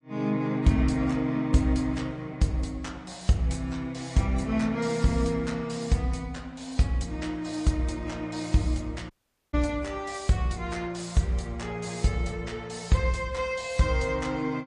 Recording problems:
lossy codec; MP3, log-spectral distance 3 dB, nothing above 8.5 kHz
audio cutting out; at 9 s

